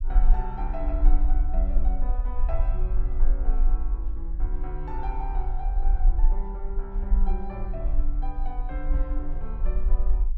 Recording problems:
low-frequency rumble; below 40 Hz, strongest tone 20 Hz, SNR -10 dB

